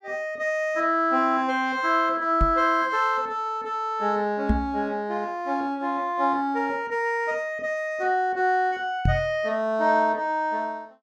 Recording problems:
microphone bump; at 2.5 s, at 4.5 s and at 9 s; peak +5 dB vs average level

